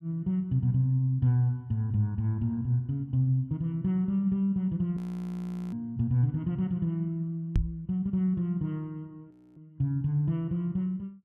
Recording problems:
frozen audio; at 5 s for 1 s and at 9.5 s
microphone bump; at 7.5 s; peak +5 dB vs average level

